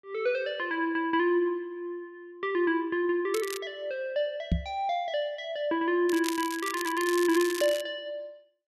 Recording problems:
crackling; at 3.5 s and from 6 to 8 s; loose cable, SNR 10 dB
microphone thump; at 4.5 s; peak +5 dB vs average level

